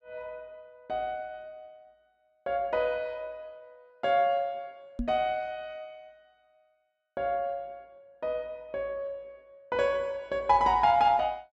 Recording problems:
microphone thump; at 5 s; peak 0 dB vs average level

